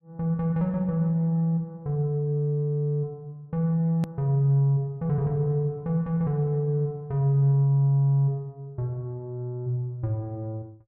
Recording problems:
edit click; at 4 s

